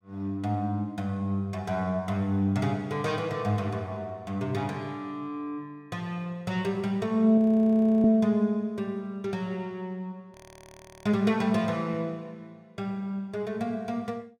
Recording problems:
frozen audio; at 7.5 s for 0.5 s and at 10 s for 0.5 s

